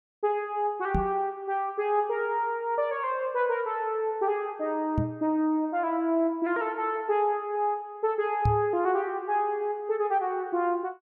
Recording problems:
knock on the microphone; at 1 s, at 5 s and at 8.5 s; peak +5 dB vs average level

